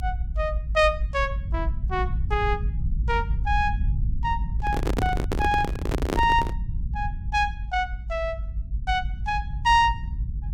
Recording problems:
rumble; below 78 Hz, SNR 4 dB
microphone handling noise; from 4.5 to 6.5 s; peak +3 dB vs average level

